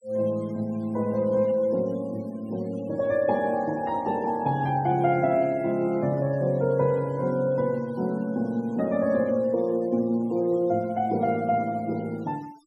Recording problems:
denoising artefacts; signal-to-artefact ratio 28 dB

